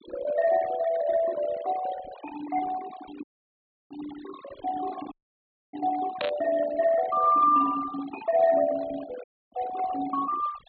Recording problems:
treble missing; nothing above 4.2 kHz
noise reduction artefacts; signal-to-artefact ratio 16 dB
audio cutting out; at 3 s for 0.5 s, at 5 s for 0.5 s and at 9 s
burst of static; at 6 s; peak -3 dB vs average level

